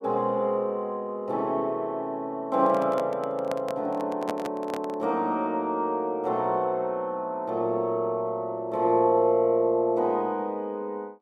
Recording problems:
microphone handling noise; from 2.5 to 5 s; peak -2 dB vs average level

